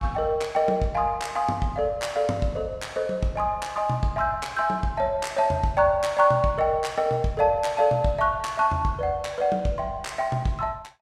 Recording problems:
none

